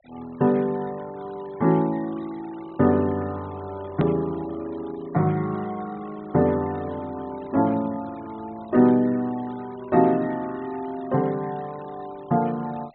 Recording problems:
treble missing; nothing above 4 kHz
noise reduction artefacts; signal-to-artefact ratio 25 dB
hard cut with a click; at 4 s

